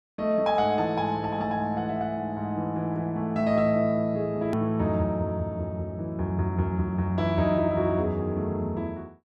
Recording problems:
hard cut with a click; at 4.5 s

